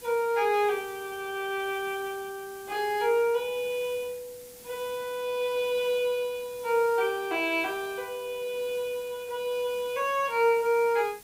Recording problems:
background hiss; SNR 19 dB

